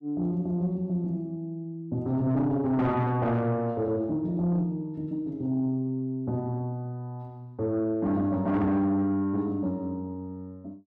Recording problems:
distortion; soft clipping, signal-to-distortion ratio 11 dB

